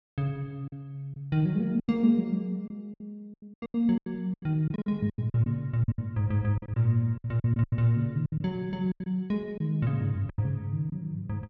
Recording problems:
lost packets; 13% of the sound replaced, filled with silence

